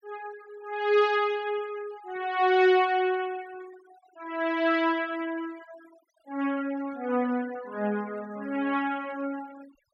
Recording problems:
denoising artefacts; signal-to-artefact ratio 23 dB

